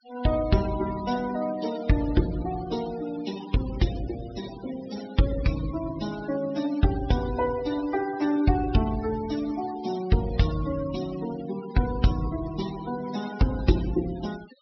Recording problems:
low-pass filter; nothing above 5.5 kHz
denoising artefacts; signal-to-artefact ratio 15 dB

